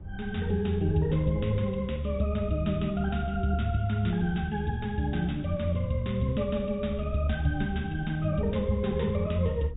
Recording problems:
treble missing; nothing above 4 kHz
low-frequency rumble; below 92 Hz, SNR 16 dB

